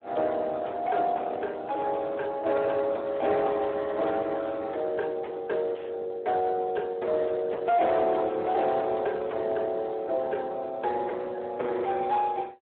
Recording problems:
telephone audio; 280 Hz to 4 kHz, Speex
distortion; soft clipping, signal-to-distortion ratio 11 dB

